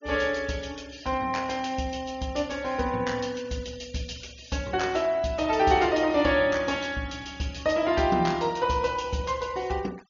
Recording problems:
treble missing; nothing above 6.8 kHz
noise reduction artefacts; signal-to-artefact ratio 23 dB

